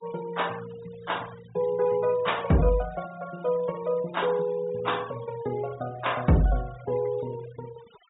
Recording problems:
low-pass filter; nothing above 4 kHz
noise reduction artefacts; signal-to-artefact ratio 19 dB

